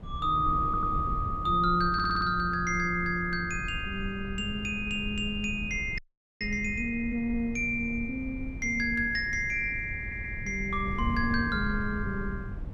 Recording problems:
wind on the microphone; below 120 Hz, SNR 10 dB
audio stuttering; at 0.5 s, at 2 s and at 10 s
audio freezing; at 6 s

